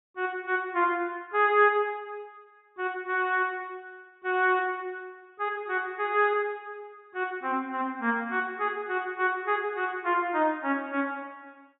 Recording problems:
low-pass filter; nothing above 4 kHz

